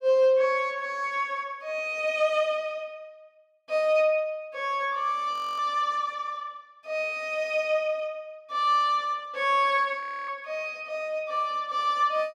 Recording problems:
audio freezing; at 5.5 s and at 10 s

